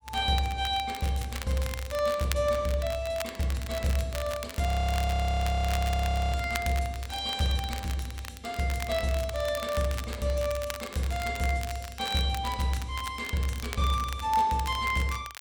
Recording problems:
crackle; vinyl, SNR 12 dB
frozen audio; at 4.5 s for 1.5 s

